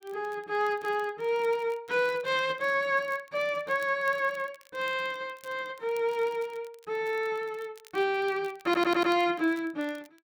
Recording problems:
crackling; vinyl, SNR 26 dB
stutter; at 8.5 s

